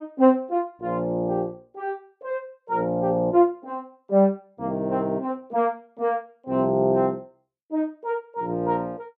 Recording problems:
none

